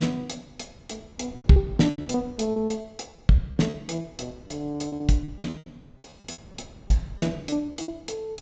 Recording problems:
low-pass filter; nothing above 8 kHz
wind on the microphone; below 270 Hz, SNR 22 dB
lost packets; 17% of the sound replaced, filled with repeated pitch periods

